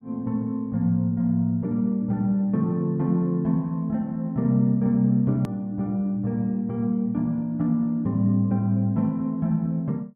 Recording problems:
hard cut with a click; at 5.5 s

